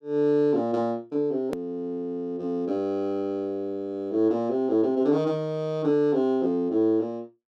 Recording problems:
edit click; at 1.5 s

